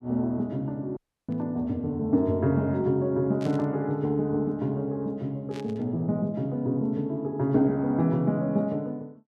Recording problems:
dropout; at 1 s
burst of static; at 1.5 s, at 3.5 s and at 5.5 s; peak -14 dB vs average level

